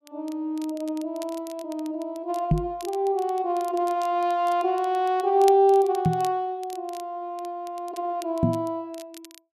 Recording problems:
crackling; vinyl, SNR 22 dB
microphone thump; at 2.5 s, at 6 s and at 8.5 s; peak +8 dB vs average level

